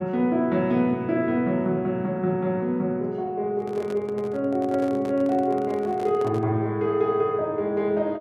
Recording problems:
microphone handling noise; from 3.5 to 6.5 s; peak -9 dB vs average level

